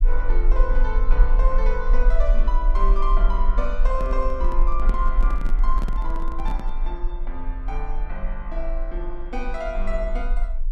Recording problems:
low-frequency rumble; below 38 Hz, strongest tone 20 Hz, SNR -6 dB
handling noise; from 4 to 7 s; peak +1 dB vs average level

